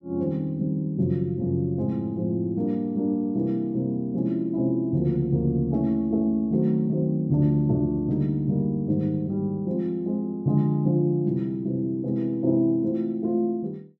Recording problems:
none

